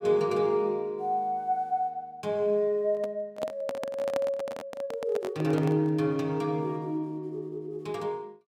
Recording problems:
microphone handling noise; from 3 to 6 s; peak 0 dB vs average level

